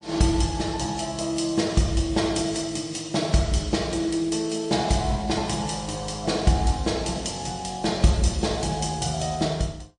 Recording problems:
lossy compression; MP3, log-spectral distance 6 dB, nothing above 8.5 kHz

